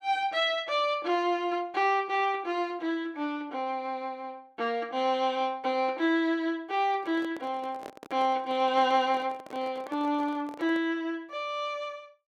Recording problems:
microphone handling noise; from 7 to 11 s; peak -9 dB vs average level

